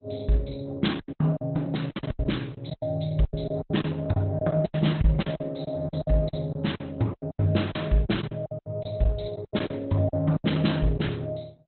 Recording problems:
lossy compression; Opus, log-spectral distance 6 dB, nothing above 4.1 kHz
packet loss; 16% of the sound replaced, filled with silence

